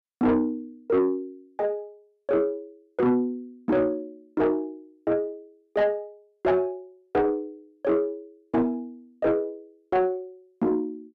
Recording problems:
distorted audio; soft clipping, signal-to-distortion ratio 11 dB

